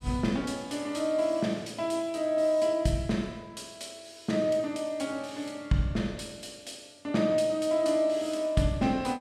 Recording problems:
none

